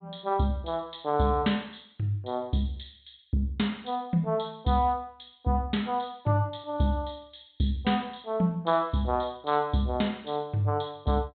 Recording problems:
treble missing; nothing above 4 kHz

